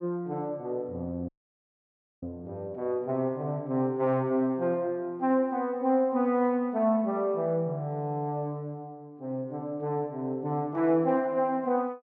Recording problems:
audio cutting out; at 1.5 s for 1 s

